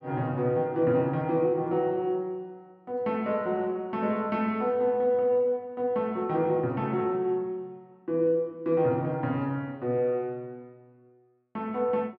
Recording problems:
none

